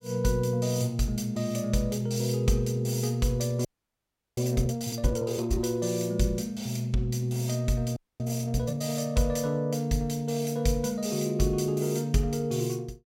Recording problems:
audio freezing; at 3.5 s for 0.5 s and at 8 s

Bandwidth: 16.5 kHz